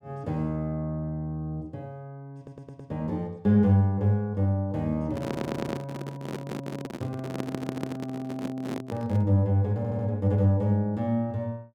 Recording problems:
stutter; 4 times, first at 2.5 s
handling noise; from 5 to 9.5 s; peak 0 dB vs average level

